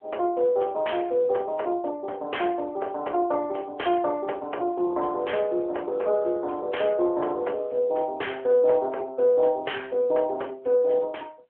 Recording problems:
telephone audio; 320 Hz to 3.3 kHz, AMR-NB

